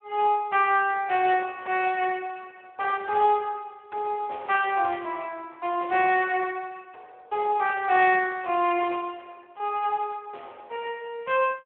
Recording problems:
phone line; 300 Hz to 3.4 kHz, Speex

